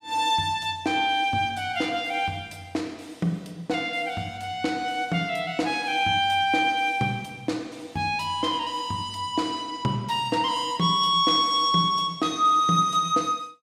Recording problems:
none

